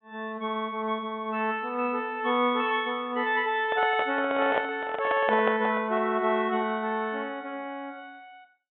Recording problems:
treble cut off; nothing above 3.6 kHz
handling noise; from 3.5 to 6 s; peak +2 dB vs average level

